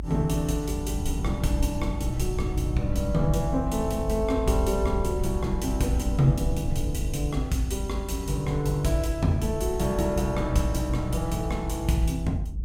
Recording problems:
low-frequency rumble; below 80 Hz, SNR 4 dB

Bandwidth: 16 kHz